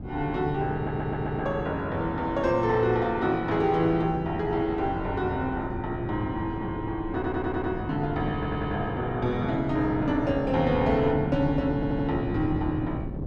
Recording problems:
wind on the microphone; below 280 Hz, SNR 8 dB
stutter; 4 times, first at 1 s

